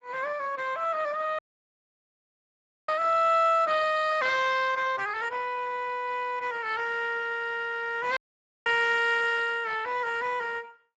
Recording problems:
codec artefacts; Speex, log-spectral distance 5 dB, nothing above 7.6 kHz
audio cutting out; at 1.5 s for 1.5 s and at 8 s

